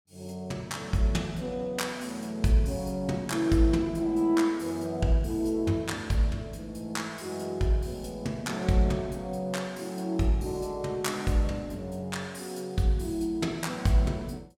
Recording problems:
none

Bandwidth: 17 kHz